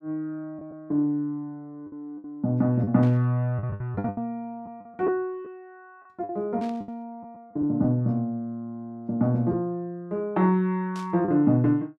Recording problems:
lost packets; 6% of the sound replaced, filled with the last packet
static burst; at 3 s, at 6.5 s and at 11 s; peak -14 dB vs average level

